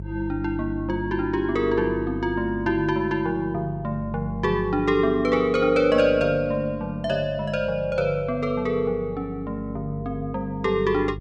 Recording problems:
hum; 50 Hz, harmonics up to 400 Hz, SNR 13 dB

